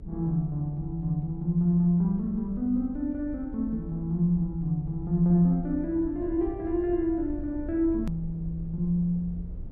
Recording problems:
hum; 60 Hz, harmonics up to 420 Hz, SNR 27 dB
low-frequency rumble; below 78 Hz, SNR 15 dB
hard cut with a click; at 8 s

